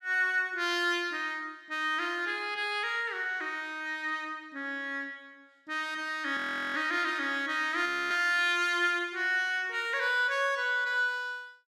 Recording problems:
audio freezing; at 6.5 s and at 8 s

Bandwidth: 14.5 kHz